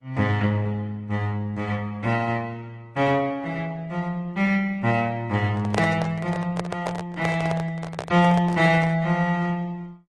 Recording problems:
lossy compression; MP3, then Opus, log-spectral distance 2 dB
microphone handling noise; from 5.5 to 9 s; peak +3 dB vs average level

